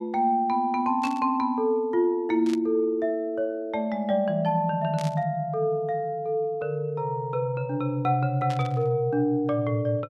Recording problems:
static burst; 4 times, first at 1 s; peak -10 dB vs average level

